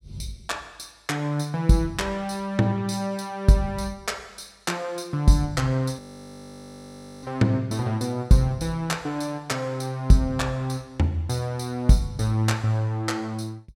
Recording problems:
audio freezing; at 6 s for 1 s

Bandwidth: 16 kHz